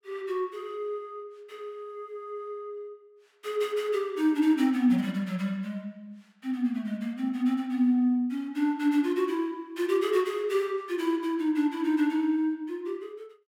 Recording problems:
none

